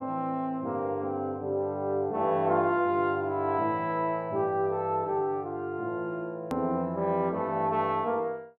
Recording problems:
hard cut with a click; at 6.5 s

